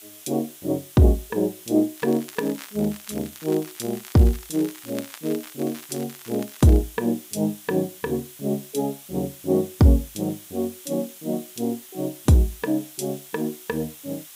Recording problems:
background hiss; slope +2 dB per octave, SNR 17 dB
crackle; from 2 to 7 s; loose cable, SNR 19 dB

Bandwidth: 15.5 kHz